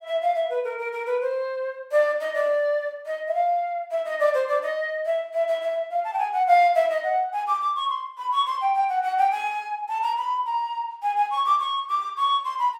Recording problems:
none

